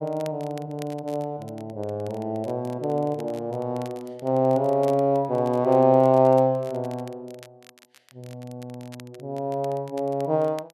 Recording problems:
crackling; vinyl, SNR 27 dB

